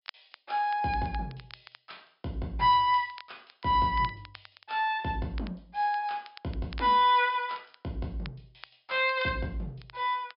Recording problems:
treble missing; nothing above 5.5 kHz
crackle; vinyl, SNR 23 dB

